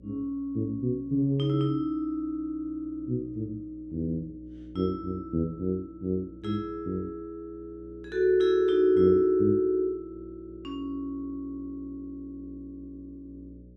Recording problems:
electrical hum; 60 Hz, harmonics up to 600 Hz, SNR 22 dB

